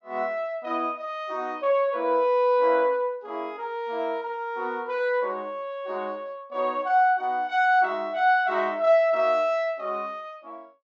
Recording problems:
treble missing; nothing above 7.6 kHz

